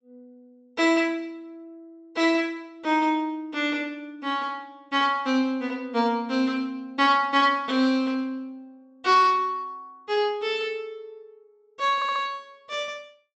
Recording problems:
treble cut off; nothing above 8 kHz
stutter; at 12 s

